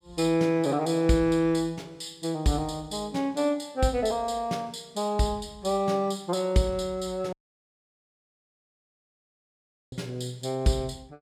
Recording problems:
dropout; at 7.5 s for 2.5 s

